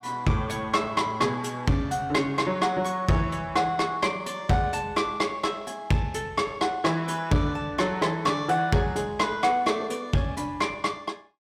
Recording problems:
distorted audio; soft clipping, signal-to-distortion ratio 10 dB

